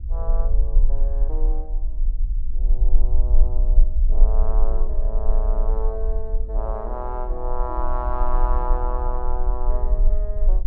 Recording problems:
low-frequency rumble; below 38 Hz, strongest tone 18 Hz, SNR -8 dB

